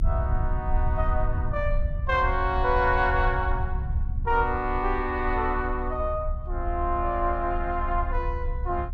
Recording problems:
rumble; below 68 Hz, strongest tone 30 Hz, SNR 3 dB

